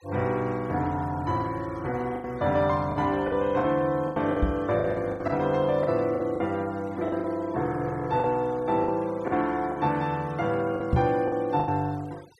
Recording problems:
denoising artefacts; signal-to-artefact ratio 24 dB
lost packets; 9% of the sound replaced, filled with the last packet
knock on the microphone; at 4.5 s and at 11 s; peak +6 dB vs average level

